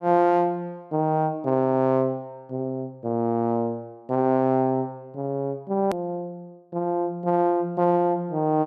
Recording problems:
click at an edit; at 6 s

